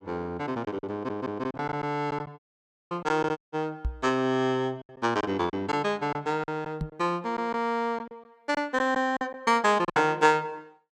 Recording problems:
packet loss; 8% of the sound replaced, filled with silence
stutter; at 1 s
dropout; at 2.5 s for 0.5 s and at 3.5 s
microphone bump; at 4 s and at 7 s; peak +1 dB vs average level

